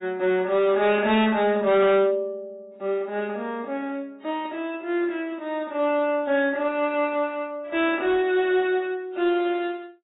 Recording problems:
lossy codec; AAC, log-spectral distance 2 dB, nothing above 3.5 kHz
distorted audio; hard clipping, uneven, signal-to-distortion ratio 10 dB

